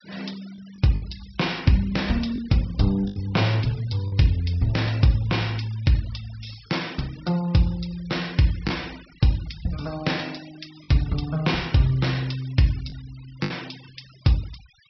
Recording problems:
low-pass filter; nothing above 5.7 kHz
denoising artefacts; signal-to-artefact ratio 20 dB
lost packets; 2% of the sound replaced, filled with the last packet

